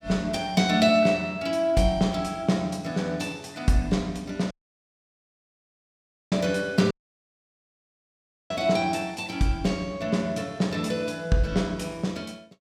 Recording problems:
dropout; at 4.5 s for 2 s and at 7 s for 1.5 s

